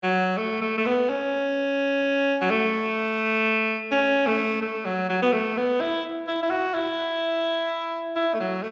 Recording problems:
codec artefacts; Speex, log-spectral distance 2 dB

